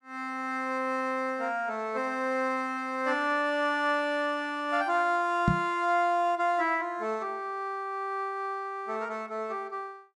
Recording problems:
microphone bump; at 5.5 s; peak +7 dB vs average level

